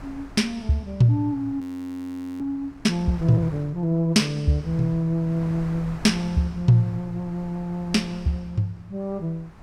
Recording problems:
wind noise; below 670 Hz, SNR 19 dB
frozen audio; at 1.5 s for 1 s

